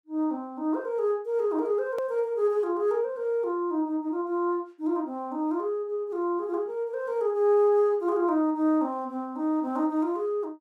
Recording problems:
click at an edit; at 2 s

